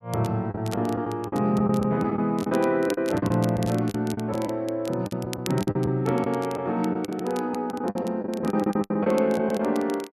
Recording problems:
crackling; vinyl, SNR 19 dB
packet loss; 11% of the sound replaced, filled with the last packet

